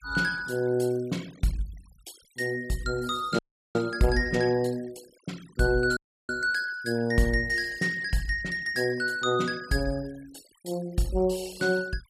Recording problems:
denoising artefacts; signal-to-artefact ratio 21 dB
audio cutting out; at 3.5 s and at 6 s

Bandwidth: 14.5 kHz